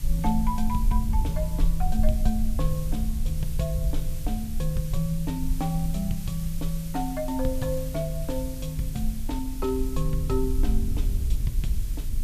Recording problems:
hiss; slope +2 dB per octave, SNR 13 dB
low-frequency rumble; below 56 Hz, SNR 0 dB

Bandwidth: 14.5 kHz